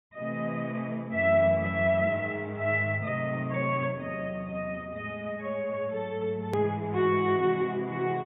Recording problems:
treble missing; nothing above 3.7 kHz
click at an edit; at 6.5 s

